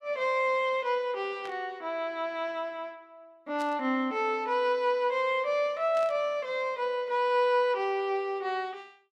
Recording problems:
static burst; at 1.5 s, at 3.5 s and at 6 s; peak -12 dB vs average level

